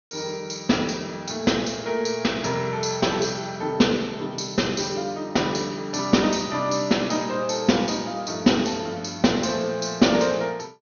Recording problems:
low-pass filter; nothing above 6.5 kHz

